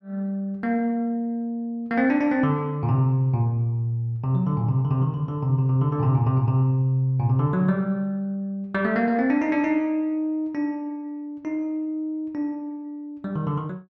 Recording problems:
none

